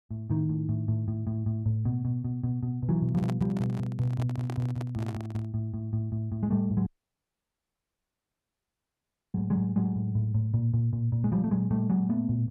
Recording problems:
microphone handling noise; from 3 to 5.5 s; peak -5 dB vs average level
audio cutting out; at 7 s for 2.5 s

